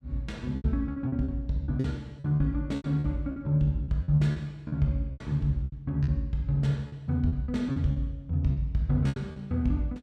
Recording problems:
packet loss; 13% of the sound replaced, filled with repeated pitch periods

